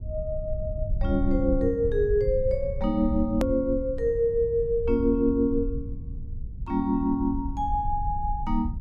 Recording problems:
rumble; below 78 Hz, SNR 8 dB
hard cut with a click; at 3.5 s

